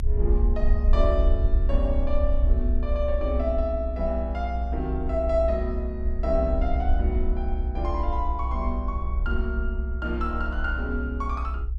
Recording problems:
low-frequency rumble; below 62 Hz, SNR -2 dB

